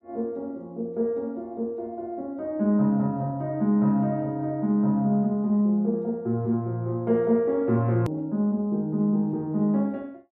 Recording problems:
hard cut with a click; at 8 s

